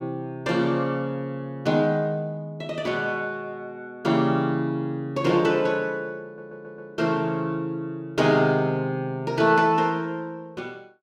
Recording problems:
stutter; at 6.5 s

